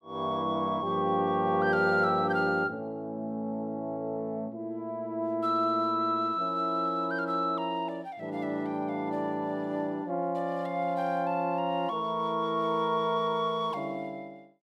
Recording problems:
none

